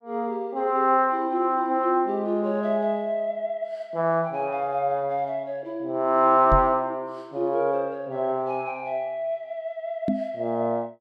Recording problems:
microphone thump; at 6.5 s and at 10 s; peak +3 dB vs average level

